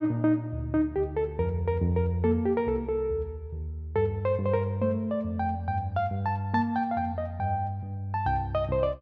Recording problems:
none

